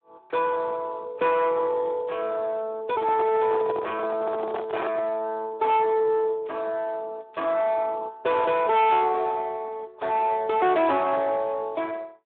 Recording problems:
phone line; 280 Hz to 3.5 kHz, Speex
distorted audio; soft clipping, signal-to-distortion ratio 11 dB
microphone handling noise; from 3 to 5 s; peak -2 dB vs average level

